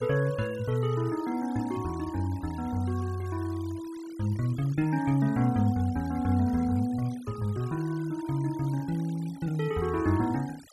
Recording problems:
denoising artefacts; signal-to-artefact ratio 21 dB

